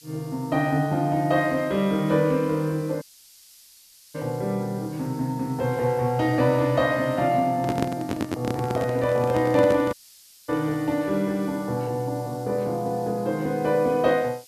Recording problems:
hiss; slope +6 dB per octave, SNR 24 dB
audio cutting out; at 3 s for 1 s and at 10 s for 0.5 s
handling noise; from 7.5 to 11 s; peak +2 dB vs average level

